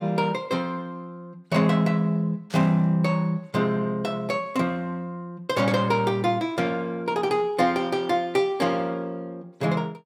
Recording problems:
static burst; at 2.5 s; peak -13 dB vs average level

